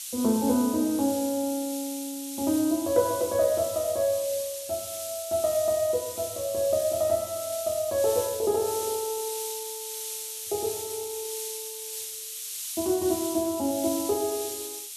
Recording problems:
background hiss; SNR 7 dB

